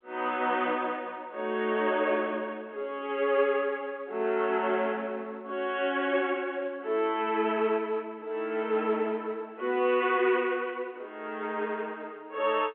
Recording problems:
telephone audio; 320 Hz to 3.3 kHz, G.711

